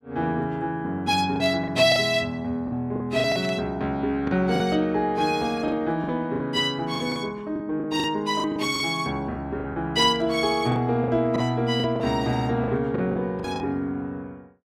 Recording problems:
packet loss; 9% of the sound replaced, filled with the last packet
static burst; 4 times, first at 1.5 s; peak -12 dB vs average level

